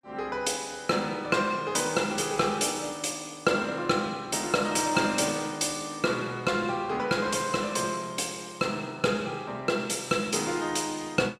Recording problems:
none

